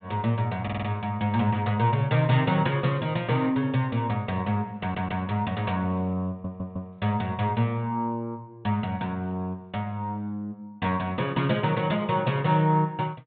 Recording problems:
treble missing; nothing above 4 kHz
stutter; at 0.5 s, at 5 s and at 6.5 s

